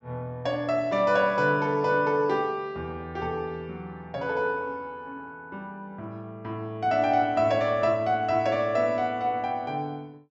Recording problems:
low-pass filter; nothing above 7.7 kHz

